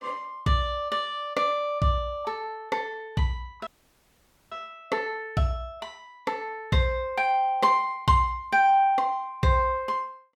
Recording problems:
audio cutting out; at 3.5 s for 1 s

